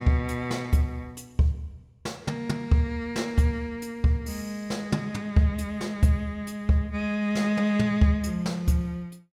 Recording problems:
none

